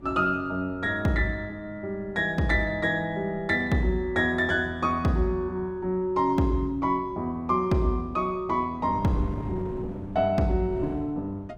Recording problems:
wind noise; below 270 Hz, SNR 17 dB

